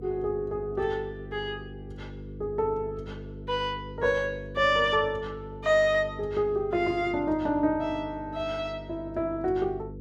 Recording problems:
hum; 50 Hz, harmonics up to 500 Hz, SNR 14 dB

